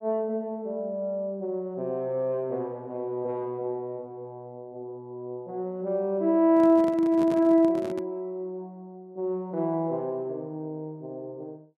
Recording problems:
handling noise; from 6.5 to 8 s; peak -5 dB vs average level

